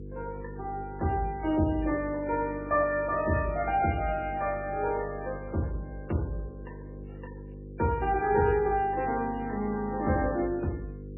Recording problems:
lossy codec; MP3, log-spectral distance 2 dB, nothing above 2.4 kHz
hum; 50 Hz, harmonics up to 500 Hz, SNR 13 dB

